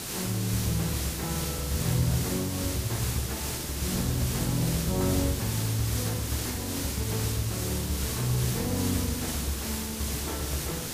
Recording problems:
background hiss; SNR 2 dB

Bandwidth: 15 kHz